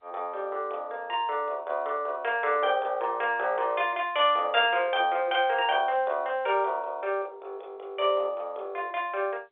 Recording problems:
phone line; 340 Hz to 3.7 kHz, G.711

